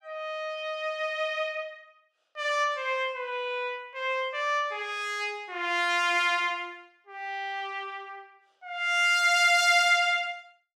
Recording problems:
none

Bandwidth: 16.5 kHz